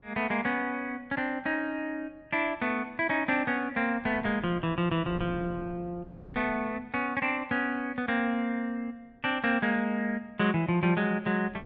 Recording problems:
wind noise; below 290 Hz, SNR 17 dB

